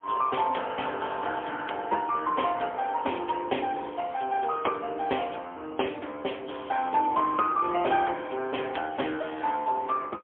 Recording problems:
telephone audio; 320 Hz to 3.4 kHz, AMR-NB, then MP3

